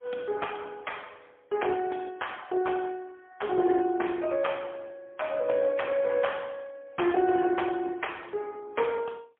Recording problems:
telephone audio; 220 Hz to 3.4 kHz, AMR-NB, then MP3

